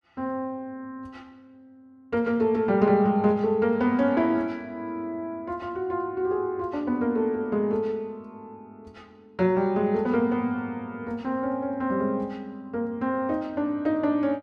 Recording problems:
none

